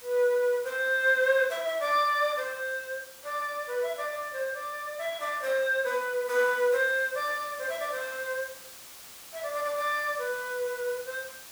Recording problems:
background hiss; slope 0 dB per octave, SNR 17 dB

